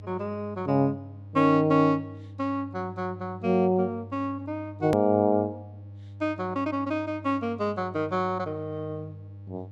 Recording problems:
mains hum; 50 Hz, harmonics up to 600 Hz, SNR 16 dB
edit click; at 5 s

